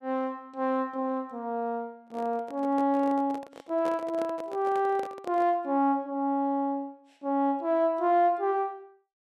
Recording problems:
microphone handling noise; from 2 to 5.5 s; peak -7 dB vs average level

